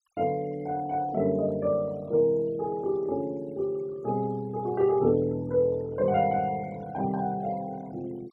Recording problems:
denoising artefacts; signal-to-artefact ratio 25 dB

